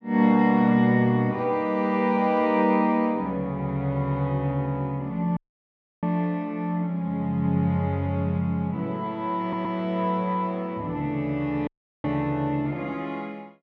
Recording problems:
audio cutting out; at 5.5 s for 0.5 s and at 12 s
stutter; at 9.5 s

